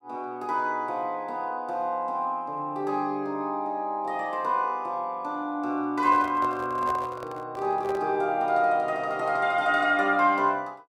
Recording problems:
handling noise; from 6 to 8 s; peak -5 dB vs average level

